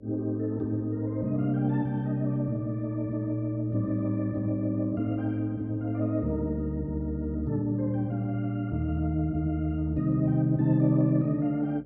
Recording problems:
hum; 60 Hz, harmonics up to 600 Hz, SNR 27 dB

